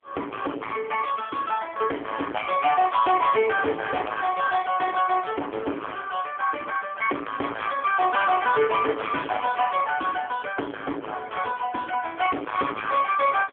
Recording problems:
phone line; 260 Hz to 2.3 kHz, AMR-NB
distortion; hard clipping, signal-to-distortion ratio 9 dB

